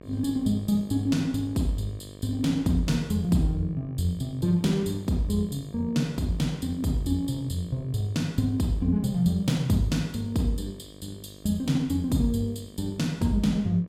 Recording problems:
electrical hum; 50 Hz, harmonics up to 2.4 kHz, SNR 20 dB

